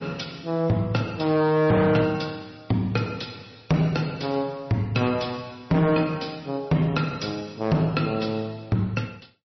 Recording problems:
codec artefacts; MP3, log-spectral distance 4 dB, nothing above 5.7 kHz
distortion; hard clipping, signal-to-distortion ratio 11 dB

